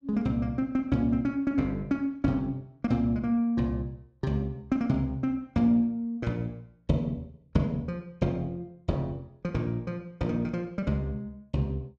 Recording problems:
none

